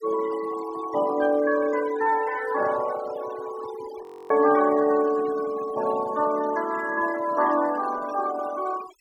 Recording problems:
denoising artefacts; signal-to-artefact ratio 15 dB
frozen audio; at 4 s

